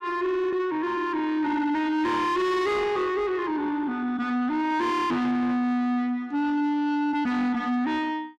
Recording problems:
distortion; soft clipping, signal-to-distortion ratio 7 dB

